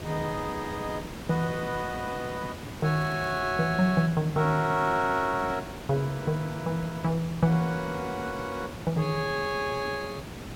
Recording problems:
background hiss; slope -5 dB per octave, SNR 11 dB
crackle; at 3 s; loose cable, SNR 29 dB

